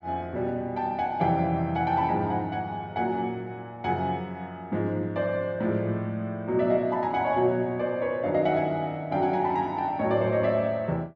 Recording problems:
none

